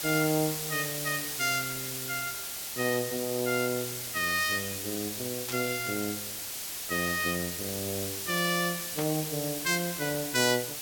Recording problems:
hiss; slope +1 dB per octave, SNR 3 dB
burst of static; at 5.5 s and at 9 s; peak -4 dB vs average level

